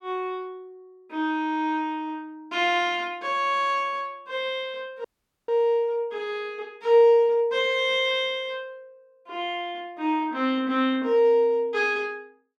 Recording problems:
dropout; at 5 s

